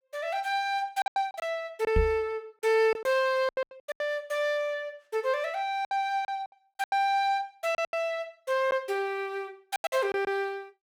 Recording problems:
packet loss; 10% of the sound replaced, filled with silence
microphone bump; at 2 s; peak +5 dB vs average level

